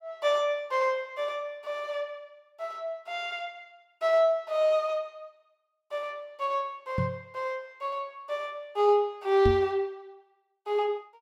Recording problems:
microphone thump; at 7 s and at 9.5 s; peak +4 dB vs average level

